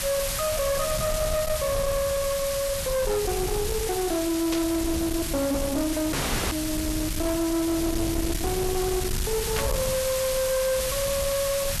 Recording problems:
distortion; soft clipping, signal-to-distortion ratio 10 dB
background hiss; SNR 3 dB
rumble; below 270 Hz, SNR 7 dB
static burst; at 4.5 s and at 9.5 s; peak -2 dB vs average level
dropout; at 6 s

